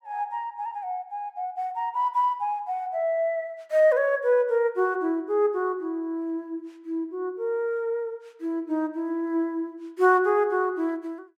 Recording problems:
none

